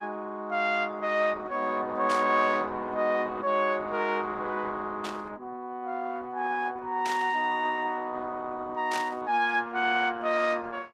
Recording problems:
codec artefacts; Opus, log-spectral distance 3 dB
burst of static; 4 times, first at 2 s; peak -4 dB vs average level

